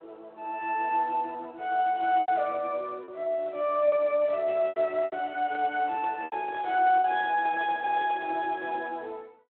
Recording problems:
phone line; 300 Hz to 3.3 kHz, Speex
packet loss; 5% of the sound replaced, filled with repeated pitch periods
microphone handling noise; from 5.5 to 8.5 s; peak -12 dB vs average level

